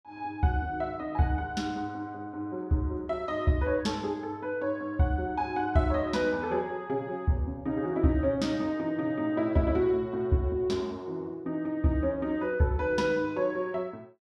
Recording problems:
none

